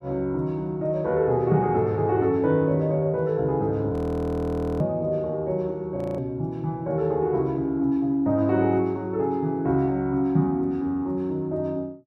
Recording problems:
audio freezing; at 4 s for 1 s and at 6 s

